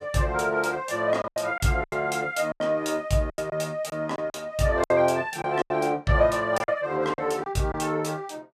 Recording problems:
lost packets; 9% of the sound replaced, filled with silence

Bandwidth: 14.5 kHz